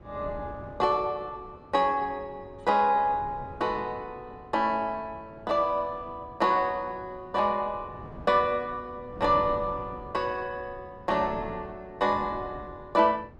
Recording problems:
wind on the microphone; below 390 Hz, SNR 18 dB

